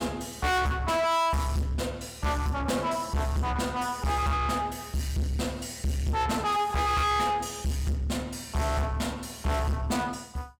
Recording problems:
distorted audio; soft clipping, signal-to-distortion ratio 6 dB

